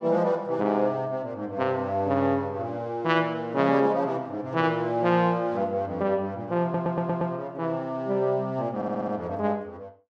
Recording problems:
stutter; at 6.5 s and at 9 s

